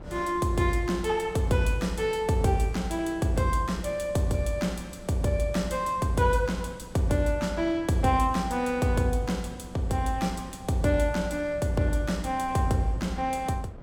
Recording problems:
wind noise; below 390 Hz, SNR 20 dB

